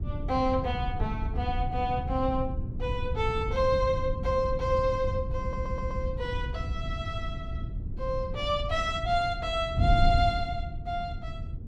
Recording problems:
wind on the microphone; below 110 Hz, SNR 4 dB
audio stuttering; at 5.5 s

